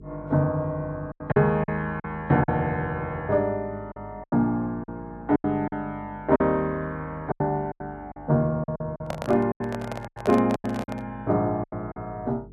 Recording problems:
electrical hum; 50 Hz, harmonics up to 450 Hz, SNR 21 dB
lost packets; 10% of the sound replaced, filled with silence
handling noise; from 9 to 11 s; peak -1 dB vs average level

